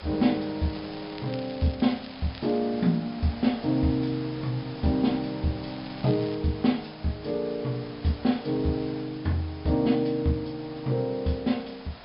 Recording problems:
treble cut off; nothing above 5.5 kHz
hiss; SNR 16 dB
crackle; from 0.5 to 2 s, at 2 s and at 5.5 s; loose cable, SNR 20 dB

